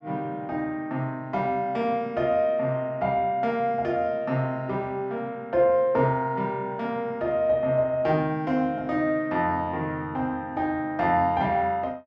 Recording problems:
none

